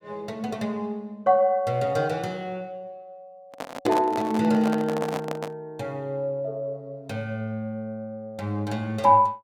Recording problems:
microphone handling noise; from 3.5 to 5.5 s; peak +1 dB vs average level

